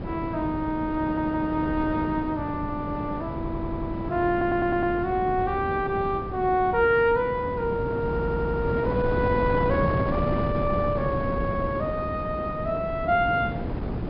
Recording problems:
treble missing; nothing above 5.5 kHz
wind on the microphone; below 390 Hz, SNR 5 dB
stutter; 4 times, first at 1 s

